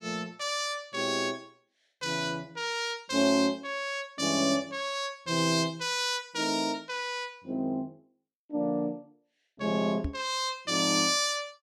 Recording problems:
knock on the microphone; at 10 s; peak 0 dB vs average level

